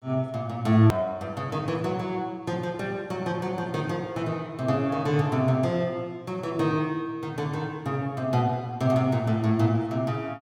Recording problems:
hard cut with a click; at 1 s

